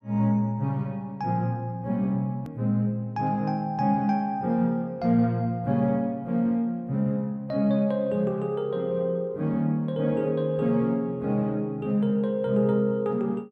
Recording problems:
hard cut with a click; at 2.5 s

